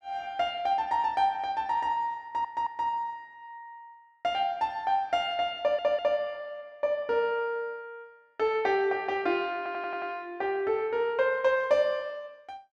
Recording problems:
stutter; at 2 s, at 5.5 s and at 9.5 s

